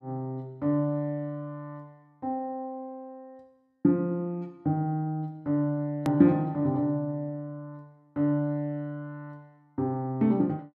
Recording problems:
click at an edit; at 6 s

